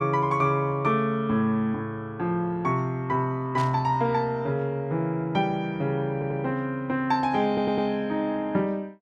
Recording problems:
burst of static; at 3.5 s; peak -9 dB vs average level
stutter; at 6 s and at 7.5 s

